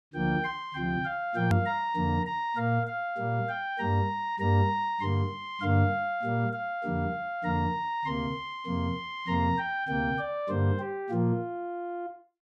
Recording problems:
click at an edit; at 1.5 s

